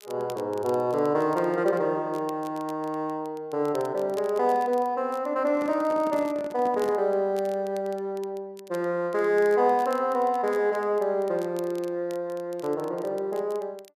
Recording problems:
crackle; vinyl, SNR 26 dB
handling noise; from 5.5 to 7 s; peak -8 dB vs average level

